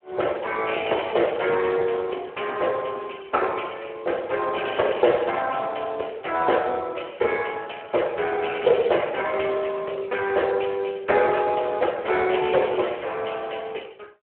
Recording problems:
telephone audio; 340 Hz to 3.2 kHz, Speex

